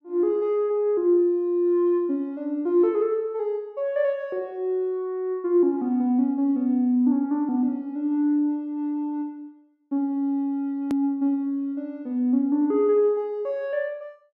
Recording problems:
click at an edit; at 11 s

